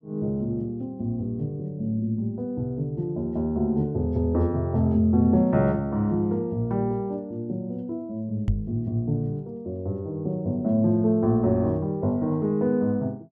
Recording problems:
microphone bump; at 8.5 s; peak +4 dB vs average level

